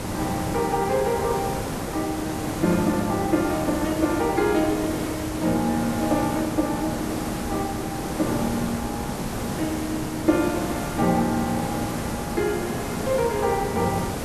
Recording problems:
hiss; slope -6 dB per octave, SNR 4 dB

